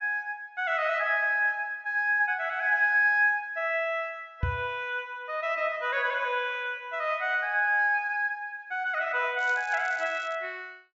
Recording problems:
treble cut off; nothing above 8 kHz
knock on the microphone; at 4.5 s; peak +1 dB vs average level
crackle; at 9.5 s; loose cable, SNR 24 dB

